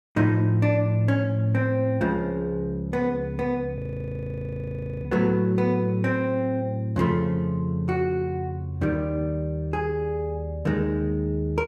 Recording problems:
audio freezing; at 4 s for 1.5 s

